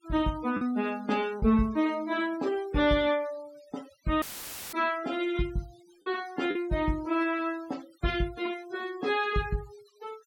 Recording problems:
noise reduction artefacts; signal-to-artefact ratio 22 dB
lost packets; 1.3% of the sound replaced, filled with the last packet
audio cutting out; at 4 s for 0.5 s; filled with static

